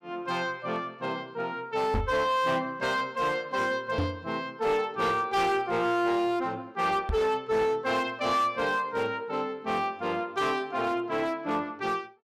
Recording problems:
distortion; hard clipping, signal-to-distortion ratio 12 dB
knock on the microphone; at 2 s, at 4 s and at 7 s; peak +2 dB vs average level

